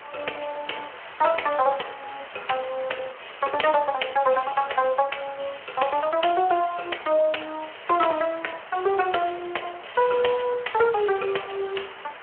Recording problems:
phone line; 340 Hz to 3.2 kHz, Speex
hiss; SNR 16 dB

